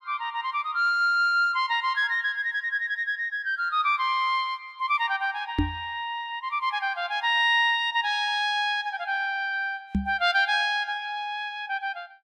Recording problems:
microphone bump; at 5.5 s and at 10 s; peak +4 dB vs average level

